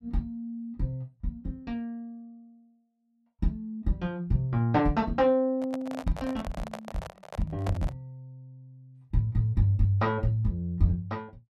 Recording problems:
microphone handling noise; from 5.5 to 8 s; peak -3 dB vs average level

